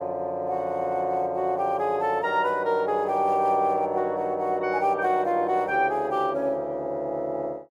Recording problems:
none

